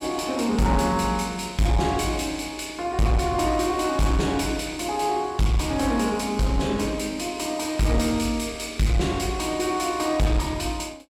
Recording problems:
distorted audio; soft clipping, signal-to-distortion ratio 10 dB

